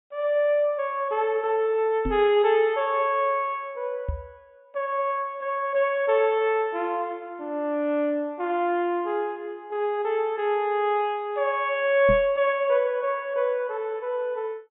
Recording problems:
treble cut off; nothing above 4 kHz
microphone thump; at 2 s, at 4 s and at 12 s; peak -1 dB vs average level

